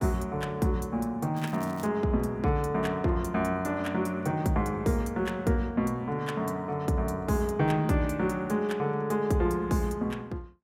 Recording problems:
crackling; at 1.5 s; loose cable, SNR 23 dB

